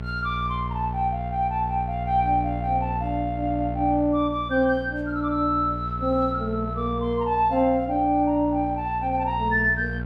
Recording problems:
mains hum; 60 Hz, harmonics up to 900 Hz, SNR 9 dB

